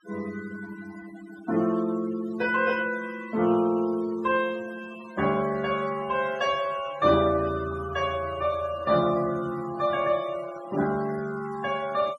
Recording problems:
denoising artefacts; signal-to-artefact ratio 17 dB

